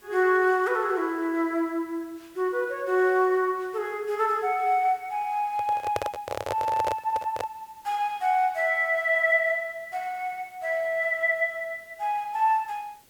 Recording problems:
background hiss; slope -2 dB per octave, SNR 30 dB
handling noise; from 5.5 to 7.5 s; peak +1 dB vs average level

